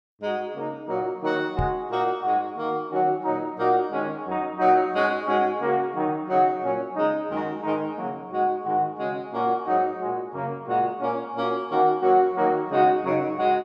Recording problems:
microphone thump; at 1.5 s; peak +1 dB vs average level

